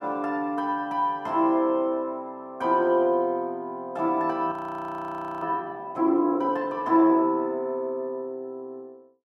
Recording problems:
frozen audio; at 4.5 s for 1 s

